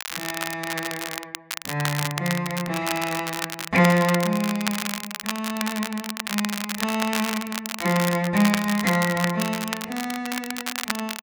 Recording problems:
crackle; vinyl, SNR 5 dB

